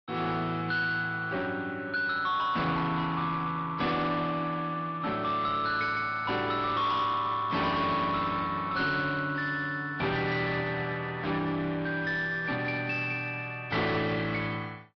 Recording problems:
treble cut off; nothing above 5 kHz
codec artefacts; AAC, log-spectral distance 2 dB
distorted audio; soft clipping, signal-to-distortion ratio 10 dB

